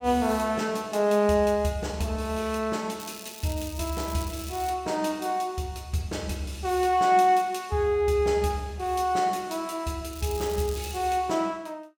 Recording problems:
crackle; from 3 to 4.5 s and at 10 s; loose cable, SNR 15 dB

